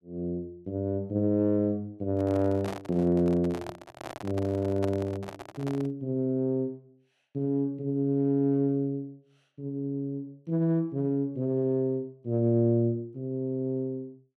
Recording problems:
handling noise; from 2 to 6 s; peak -5 dB vs average level

